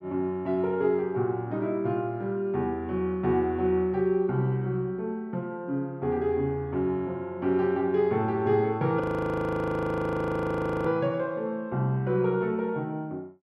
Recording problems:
frozen audio; at 9 s for 2 s

